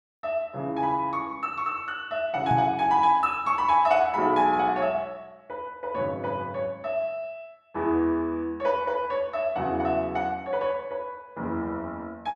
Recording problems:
knock on the microphone; at 2.5 s; peak 0 dB vs average level

